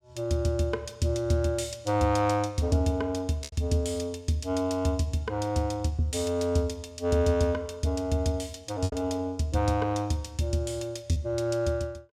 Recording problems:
packet loss; 1.7% of the sound replaced, filled with repeated pitch periods

